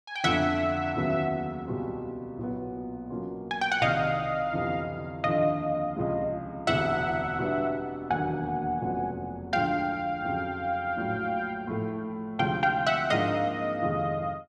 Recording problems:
none

